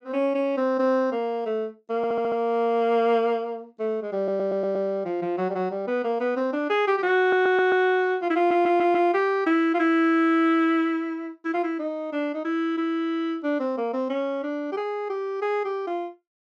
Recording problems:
audio stuttering; 4 times, first at 2 s

